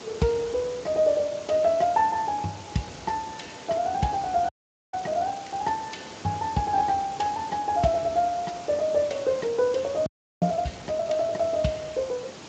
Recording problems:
lossy codec; Speex, log-spectral distance 10 dB
hiss; SNR 15 dB
frozen audio; at 4.5 s and at 10 s

